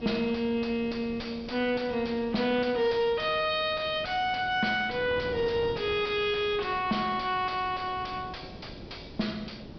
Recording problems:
treble cut off; nothing above 5.5 kHz
distortion; soft clipping, signal-to-distortion ratio 8 dB
background hiss; SNR 27 dB
wind on the microphone; below 460 Hz, SNR 15 dB

